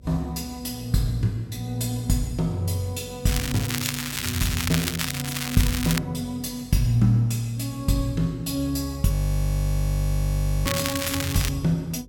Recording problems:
hum; 50 Hz, harmonics up to 550 Hz, SNR 24 dB
crackling; from 3.5 to 6 s and at 11 s; loose cable, SNR 3 dB
frozen audio; at 9 s for 1.5 s

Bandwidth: 17 kHz